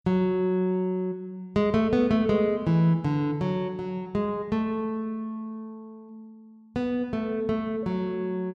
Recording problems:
none

